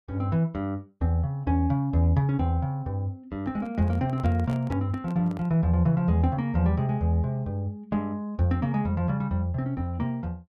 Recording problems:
microphone handling noise; from 3.5 to 5.5 s; peak -10 dB vs average level

